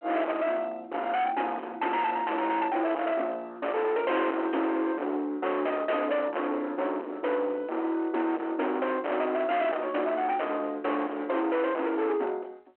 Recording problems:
telephone audio; 260 Hz to 3.4 kHz, G.726
distorted audio; hard clipping, signal-to-distortion ratio 6 dB

